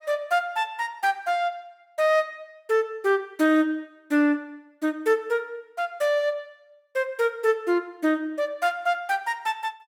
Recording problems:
none

